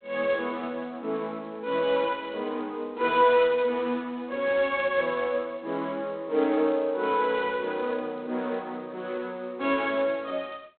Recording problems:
phone line; 260 Hz to 3.9 kHz, G.726

